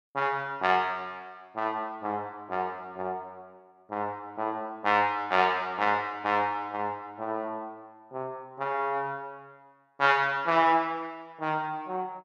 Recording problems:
none

